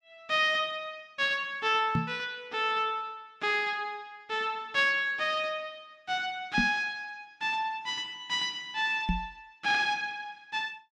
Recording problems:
knock on the microphone; at 2 s, at 6.5 s and at 9 s; peak +4 dB vs average level

